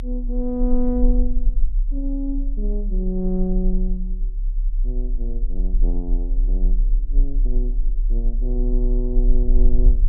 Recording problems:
low-pass filter; nothing above 4 kHz
rumble; below 36 Hz, strongest tone 34 Hz, SNR -4 dB
wind on the microphone; below 60 Hz, SNR 8 dB

